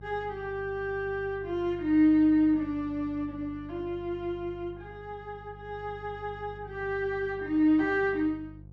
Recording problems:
electrical hum; 50 Hz, harmonics up to 550 Hz, SNR 19 dB

